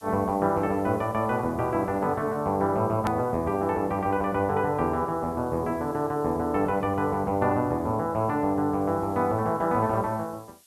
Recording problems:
background hiss; slope +4 dB per octave, SNR 29 dB
edit click; at 3 s

